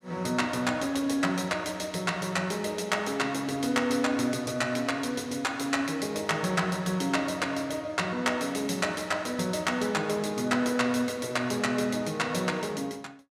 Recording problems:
none

